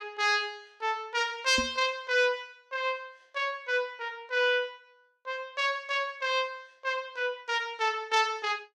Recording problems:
microphone thump; at 1.5 s; peak -1 dB vs average level

